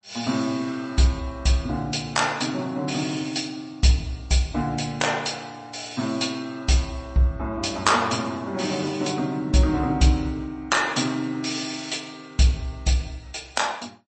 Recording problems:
lossy compression; MP3, log-spectral distance 5 dB, nothing above 8.2 kHz

